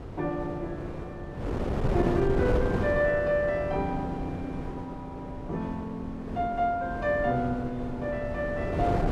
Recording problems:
wind noise; below 450 Hz, SNR 4 dB

